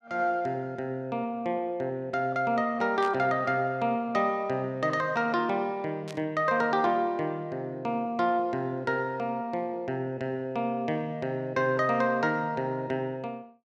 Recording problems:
static burst; at 3 s and at 6 s; peak -8 dB vs average level

